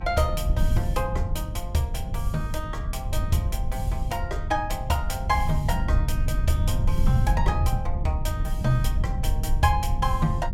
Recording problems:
electrical hum; 50 Hz, harmonics up to 1.8 kHz, SNR 26 dB
low-frequency rumble; below 92 Hz, SNR -1 dB

